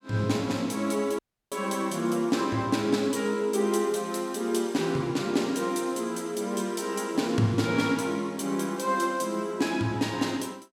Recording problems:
dropout; at 1 s

